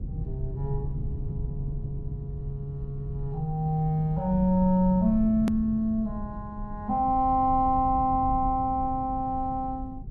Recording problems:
low-frequency rumble; below 130 Hz, SNR 11 dB
hard cut with a click; at 5.5 s

